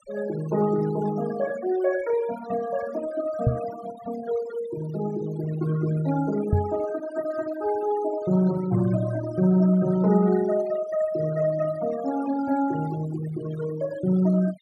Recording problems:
denoising artefacts; signal-to-artefact ratio 15 dB
knock on the microphone; at 3.5 s and at 6.5 s; peak +7 dB vs average level

